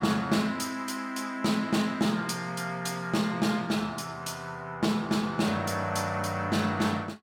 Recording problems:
none

